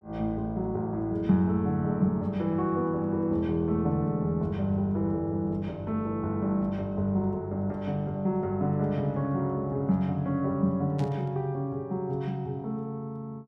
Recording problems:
static burst; at 11 s; peak -13 dB vs average level

